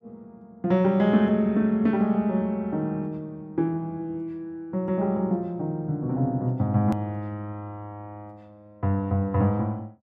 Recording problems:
hard cut with a click; at 7 s

